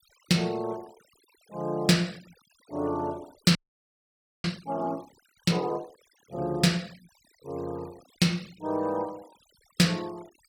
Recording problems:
noise reduction artefacts; signal-to-artefact ratio 25 dB
audio freezing; at 3.5 s for 1 s

